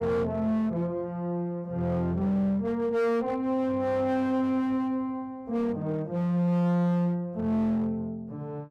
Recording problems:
distortion; hard clipping, signal-to-distortion ratio 10 dB

